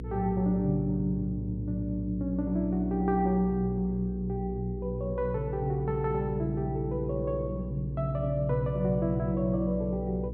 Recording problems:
electrical hum; 60 Hz, harmonics up to 480 Hz, SNR 8 dB

